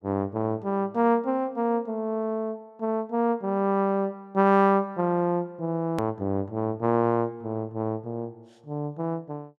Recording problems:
edit click; at 6 s

